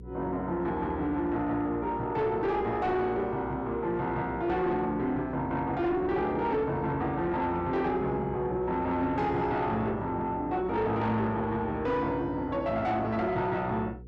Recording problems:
distortion; soft clipping, signal-to-distortion ratio 10 dB
hum; 60 Hz, harmonics up to 480 Hz, SNR 17 dB

